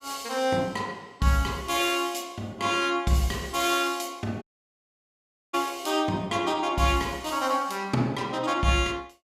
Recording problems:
audio cutting out; at 4.5 s for 1 s

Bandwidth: 15.5 kHz